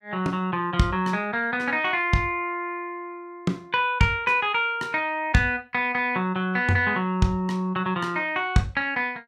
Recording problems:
none

